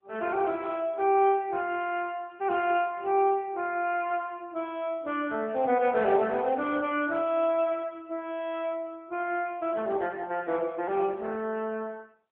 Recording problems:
phone line; 260 Hz to 3.4 kHz, AMR-NB

